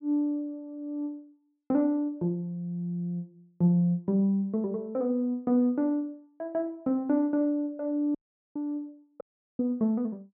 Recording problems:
audio cutting out; at 8 s and at 9 s

